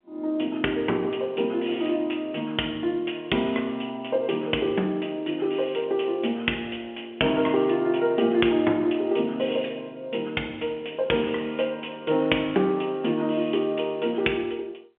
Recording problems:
telephone audio; 190 Hz to 3.3 kHz, G.711

